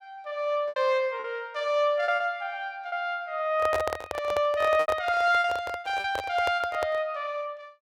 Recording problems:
lost packets; 7% of the sound replaced, filled with repeated pitch periods
handling noise; from 3.5 to 7 s; peak 0 dB vs average level

